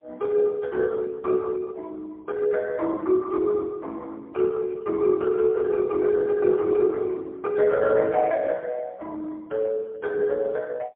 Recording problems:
telephone audio; 280 Hz to 2 kHz, AMR-NB, then MP3

